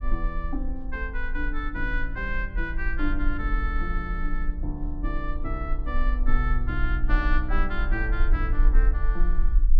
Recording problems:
rumble; below 40 Hz, strongest tone 18 Hz, SNR -3 dB

